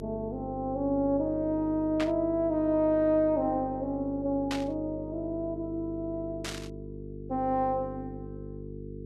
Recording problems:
hum; 50 Hz, harmonics up to 450 Hz, SNR 11 dB
static burst; at 2 s, at 4.5 s and at 6.5 s; peak -2 dB vs average level

